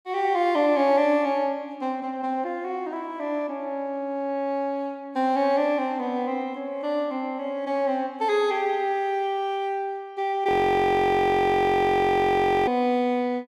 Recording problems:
audio freezing; at 10 s for 2 s

